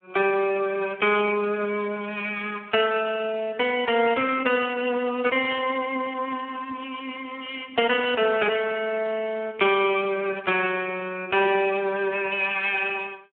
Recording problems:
phone line; 300 Hz to 3.7 kHz, Speex

